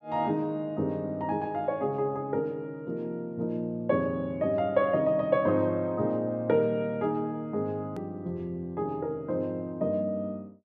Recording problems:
hard cut with a click; at 8 s

